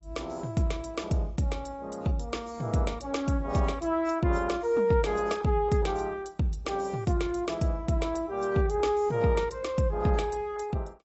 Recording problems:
lossy compression; AAC, log-spectral distance 3 dB, nothing above 7.8 kHz

